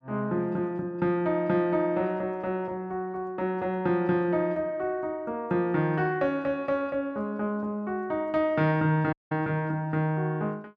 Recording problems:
audio cutting out; at 9 s

